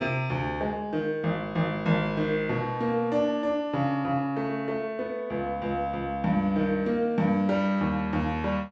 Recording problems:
none

